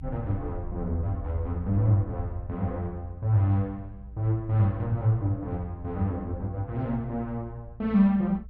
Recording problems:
rumble; below 78 Hz, SNR 15 dB

